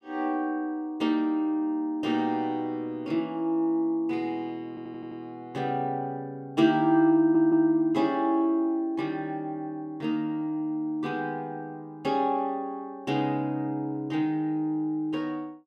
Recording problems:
stutter; at 4.5 s and at 7 s

